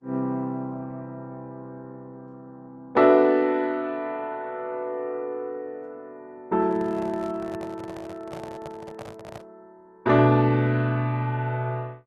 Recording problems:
lossy compression; Opus, log-spectral distance 2 dB
microphone handling noise; from 6.5 to 9.5 s; peak -11 dB vs average level

